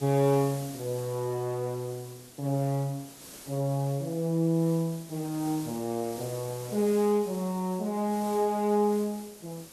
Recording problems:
background hiss; SNR 16 dB

